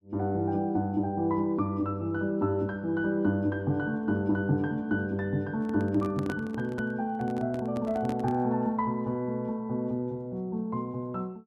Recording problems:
microphone handling noise; from 5.5 to 8.5 s; peak -2 dB vs average level

